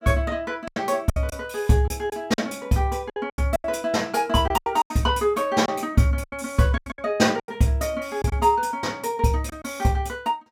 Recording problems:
packet loss; 10% of the sound replaced, filled with silence

